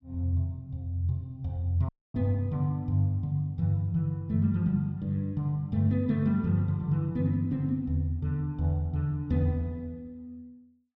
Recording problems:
dropout; at 2 s

